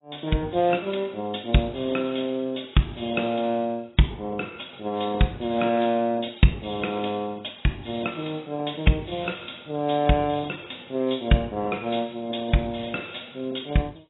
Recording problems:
lossy codec; AAC, log-spectral distance 9 dB, nothing above 3.8 kHz

